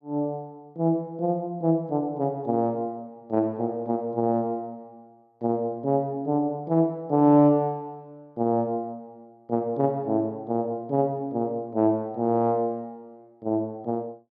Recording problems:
none

